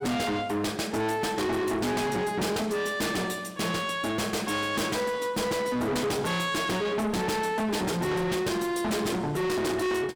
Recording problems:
distorted audio; soft clipping, signal-to-distortion ratio 6 dB

